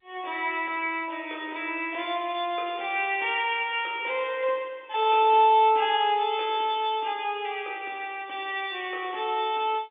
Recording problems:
telephone audio; 280 Hz to 3.6 kHz, G.711

